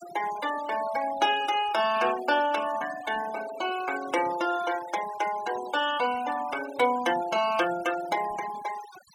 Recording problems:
denoising artefacts; signal-to-artefact ratio 13 dB

